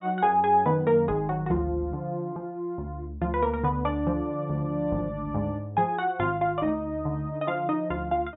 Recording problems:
treble missing; nothing above 4 kHz

